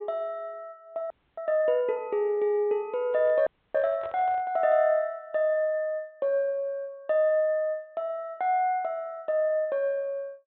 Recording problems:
treble cut off; nothing above 4 kHz
frozen audio; at 1 s and at 3.5 s
microphone handling noise; from 3 to 4.5 s; peak -12 dB vs average level

